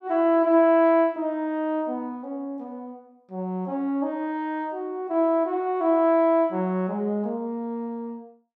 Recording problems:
none

